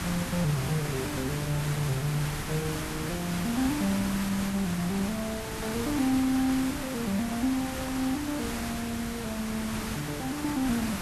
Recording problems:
background hiss; slope -3 dB per octave, SNR 4 dB

